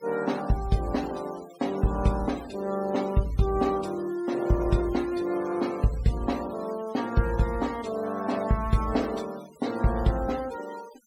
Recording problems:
noise reduction artefacts; signal-to-artefact ratio 19 dB

